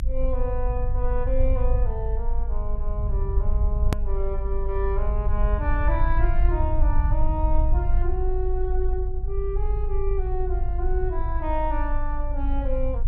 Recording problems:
rumble; below 52 Hz, strongest tone 22 Hz, SNR -5 dB
click at an edit; at 4 s

